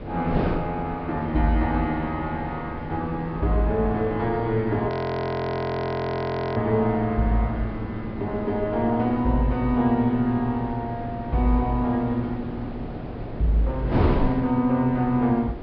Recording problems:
low-pass filter; nothing above 5.5 kHz
wind noise; below 410 Hz, SNR 8 dB
frozen audio; at 5 s for 1.5 s

